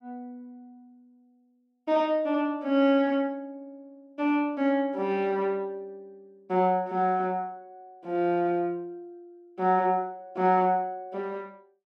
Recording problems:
none

